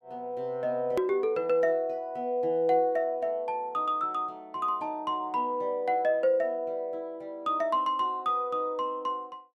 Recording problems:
edit click; at 1 s

